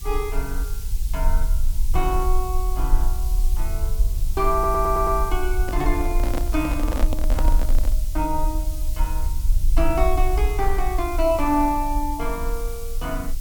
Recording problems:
hiss; SNR 13 dB
rumble; below 46 Hz, strongest tone 20 Hz, SNR 0 dB
audio stuttering; at 4.5 s
handling noise; from 5.5 to 8 s; peak 0 dB vs average level

